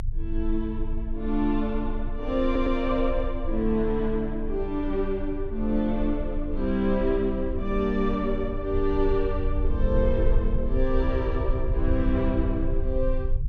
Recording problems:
rumble; below 56 Hz, strongest tone 24 Hz, SNR 4 dB
audio stuttering; at 2.5 s

